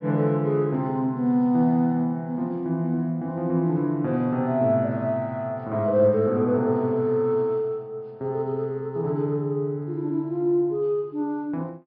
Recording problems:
treble missing; nothing above 5.5 kHz

